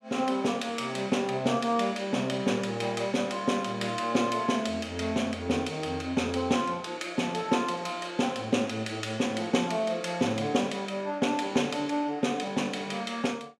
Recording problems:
none

